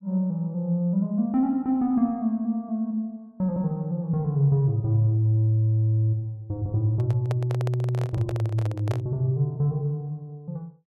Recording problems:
handling noise; from 7 to 9 s; peak -5 dB vs average level

